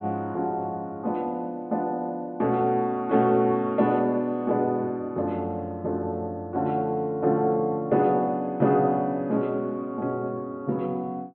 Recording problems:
treble missing; nothing above 4 kHz

